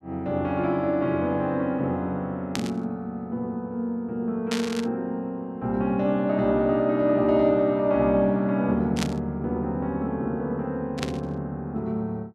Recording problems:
burst of static; 4 times, first at 2.5 s; peak 0 dB vs average level

